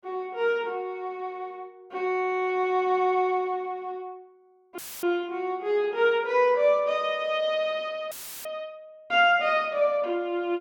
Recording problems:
audio cutting out; at 5 s and at 8 s; filled with static

